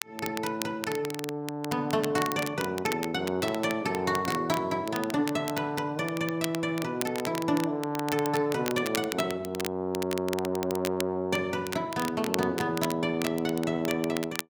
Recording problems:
crackling; vinyl, SNR 9 dB

